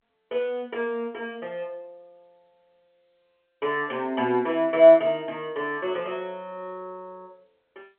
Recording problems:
phone line; 220 Hz to 3.3 kHz, G.711

